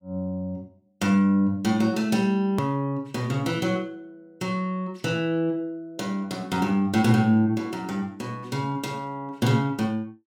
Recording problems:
hard cut with a click; at 2.5 s

